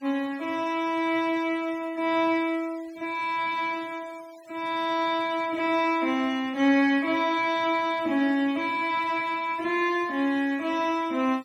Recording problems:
noise reduction artefacts; signal-to-artefact ratio 25 dB

